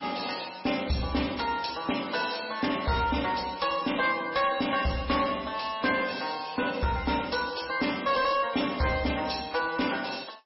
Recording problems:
lossy codec; MP3, log-spectral distance 9 dB, nothing above 5.5 kHz
distorted audio; soft clipping, signal-to-distortion ratio 12 dB

